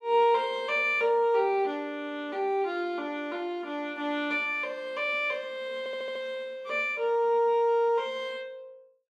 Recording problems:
stutter; at 6 s

